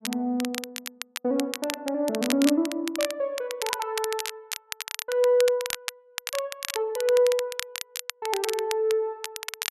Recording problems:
crackling; vinyl, SNR 7 dB

